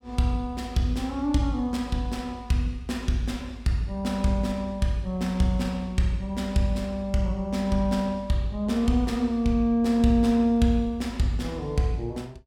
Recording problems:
none

